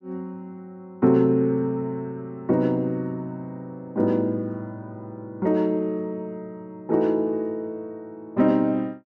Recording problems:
none

